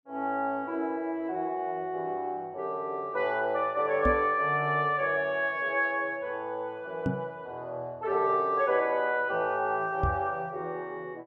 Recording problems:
microphone bump; at 4 s, at 7 s and at 10 s; peak +3 dB vs average level

